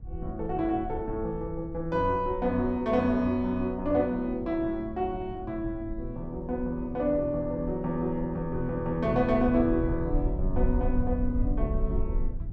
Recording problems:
rumble; below 64 Hz, SNR 8 dB

